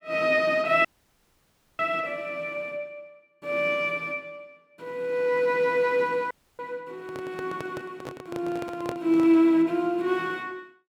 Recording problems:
dropout; at 1 s for 1 s and at 6.5 s
handling noise; from 7 to 9.5 s; peak -4 dB vs average level

